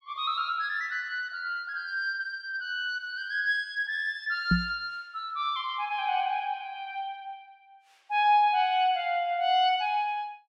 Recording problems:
microphone thump; at 4.5 s; peak +7 dB vs average level

